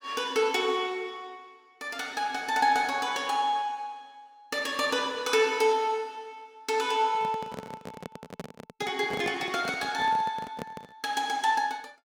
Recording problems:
handling noise; from 7 to 11 s; peak -5 dB vs average level

